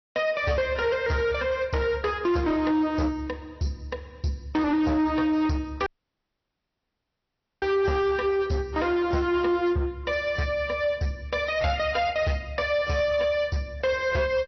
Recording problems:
low-pass filter; nothing above 5.8 kHz
lossy compression; AAC, log-spectral distance 2 dB
distorted audio; hard clipping, signal-to-distortion ratio 11 dB
audio cutting out; at 6 s for 2 s

